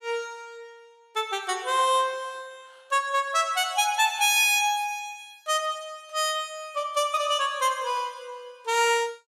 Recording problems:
none

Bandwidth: 15 kHz